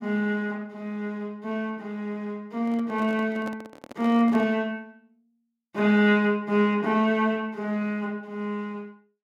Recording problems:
handling noise; from 2.5 to 4.5 s; peak -9 dB vs average level

